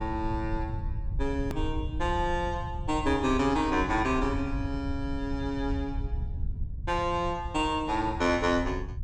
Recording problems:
low-frequency rumble; below 90 Hz, SNR 7 dB
edit click; at 1.5 s

